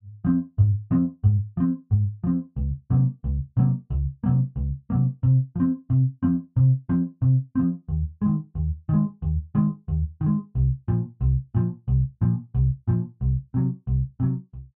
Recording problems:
none

